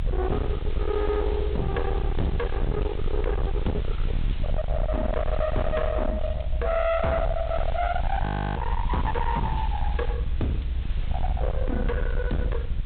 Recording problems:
treble missing; nothing above 4 kHz
distorted audio; hard clipping, signal-to-distortion ratio 6 dB
background hiss; SNR 18 dB
low-frequency rumble; below 100 Hz, SNR 1 dB
frozen audio; at 8 s

